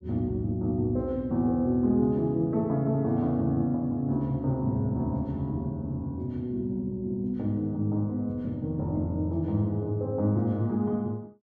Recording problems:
none

